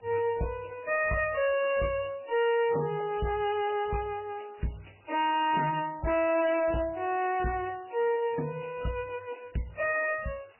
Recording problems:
lossy codec; MP3, then MP3, log-spectral distance 7 dB, nothing above 2.9 kHz
distortion; hard clipping, uneven, signal-to-distortion ratio 9 dB
background hiss; SNR 30 dB

